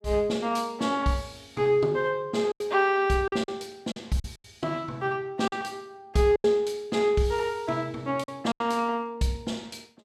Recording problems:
packet loss; 6% of the sound replaced, filled with silence

